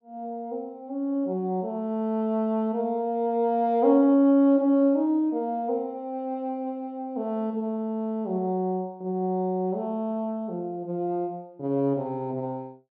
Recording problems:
none

